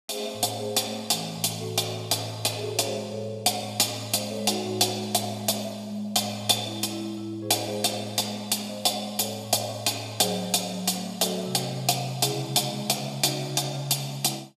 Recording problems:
none

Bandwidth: 15 kHz